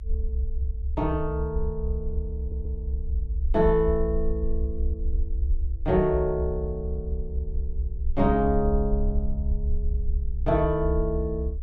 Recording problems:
rumble; below 66 Hz, SNR 3 dB
stutter; at 2.5 s

